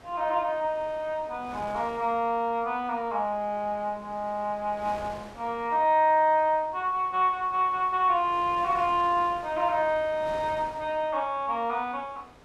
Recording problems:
wind noise; below 1.7 kHz, SNR 21 dB

